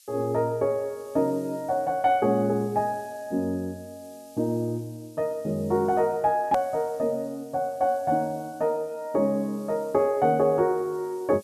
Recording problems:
background hiss; slope +8 dB per octave, SNR 27 dB
edit click; at 6.5 s

